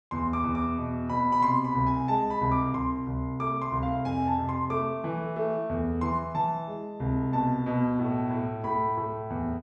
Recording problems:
none

